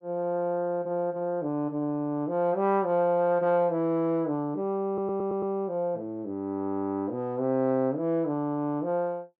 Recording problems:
audio stuttering; at 5 s

